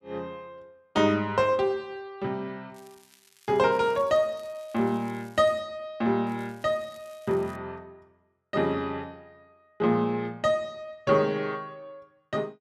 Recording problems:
crackling; at 2.5 s, from 3.5 to 5.5 s and from 6.5 to 7.5 s; loose cable, SNR 29 dB

